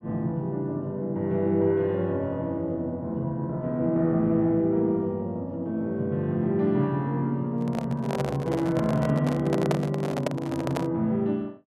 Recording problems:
handling noise; from 7.5 to 11 s; peak +3 dB vs average level

